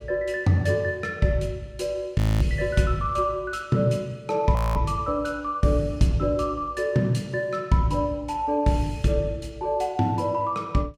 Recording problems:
audio freezing; at 2 s and at 4.5 s

